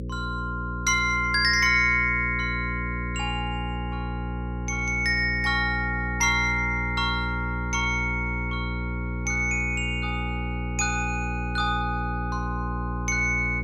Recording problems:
hum; 60 Hz, harmonics up to 540 Hz, SNR 6 dB

